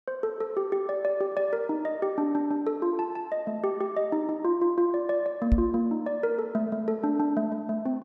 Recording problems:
microphone thump; at 5.5 s; peak +8 dB vs average level

